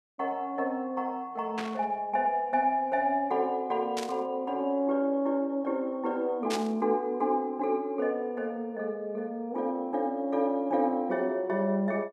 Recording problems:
burst of static; at 1.5 s, at 4 s and at 6.5 s; peak -1 dB vs average level

